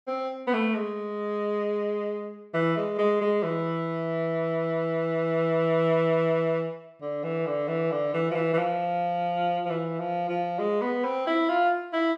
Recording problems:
none

